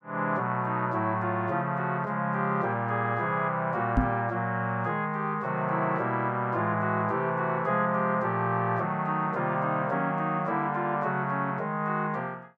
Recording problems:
knock on the microphone; at 4 s; peak +6 dB vs average level

